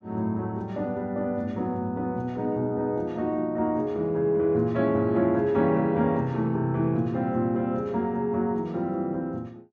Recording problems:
none

